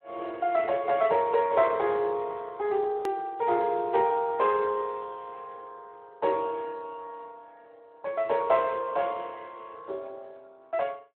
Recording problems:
phone line; 300 Hz to 2.8 kHz, Speex
hard cut with a click; at 3 s

